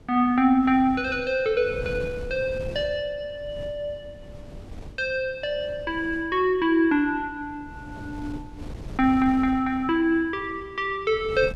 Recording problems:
wind noise; below 240 Hz, SNR 17 dB

